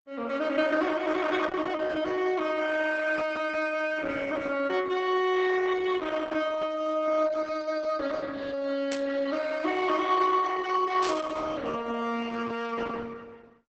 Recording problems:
lossy compression; Opus, log-spectral distance 4 dB, nothing above 7.8 kHz
static burst; at 9 s and at 11 s; peak -4 dB vs average level

